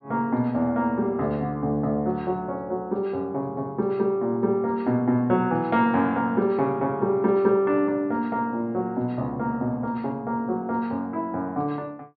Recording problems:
low-pass filter; nothing above 5.5 kHz

